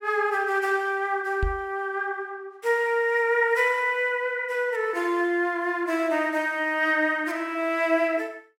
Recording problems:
microphone bump; at 1.5 s; peak 0 dB vs average level

